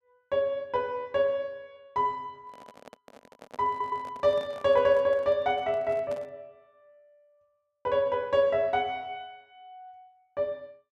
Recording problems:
microphone handling noise; from 2.5 to 6.5 s; peak -10 dB vs average level
stutter; at 3.5 s

